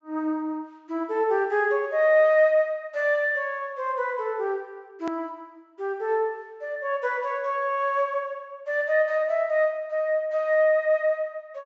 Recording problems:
treble cut off; nothing above 8 kHz
click at an edit; at 5 s

